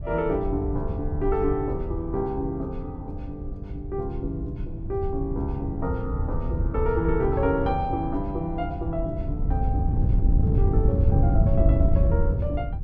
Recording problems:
wind on the microphone; below 110 Hz, SNR -2 dB

